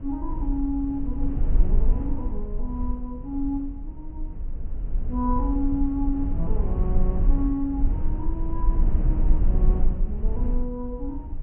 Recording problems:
low-pass filter; nothing above 3.2 kHz
rumble; below 48 Hz, SNR -3 dB

